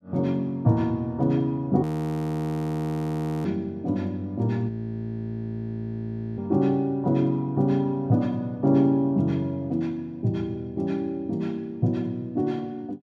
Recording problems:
frozen audio; at 2 s for 1.5 s and at 4.5 s for 1.5 s

